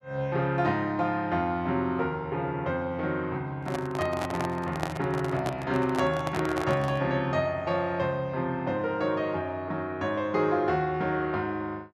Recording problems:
handling noise; from 3.5 to 7 s; peak +1 dB vs average level

